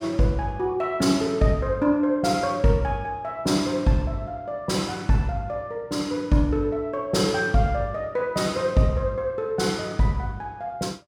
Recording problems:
none

